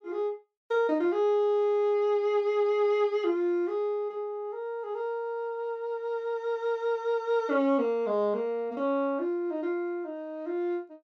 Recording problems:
none

